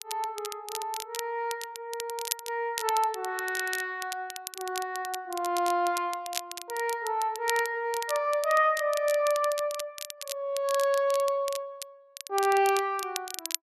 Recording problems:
crackling; vinyl, SNR 10 dB

